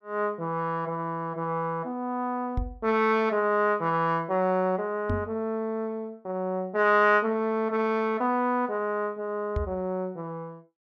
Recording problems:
knock on the microphone; at 2.5 s, at 5 s and at 9.5 s; peak 0 dB vs average level

